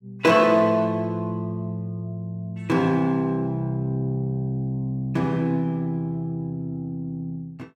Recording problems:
none

